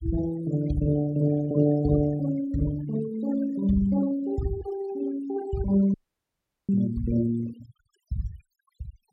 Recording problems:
denoising artefacts; signal-to-artefact ratio 18 dB
dropout; at 6 s for 1 s

